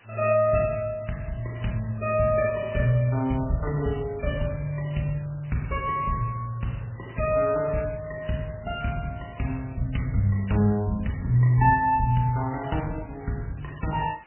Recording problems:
codec artefacts; MP3, log-spectral distance 10 dB, nothing above 2.5 kHz
background hiss; SNR 28 dB

